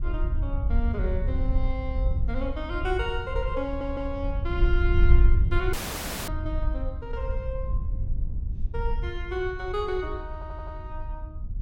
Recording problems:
wind on the microphone; below 66 Hz, SNR -4 dB
stutter; at 3.5 s and at 10 s
audio cutting out; at 5.5 s for 0.5 s

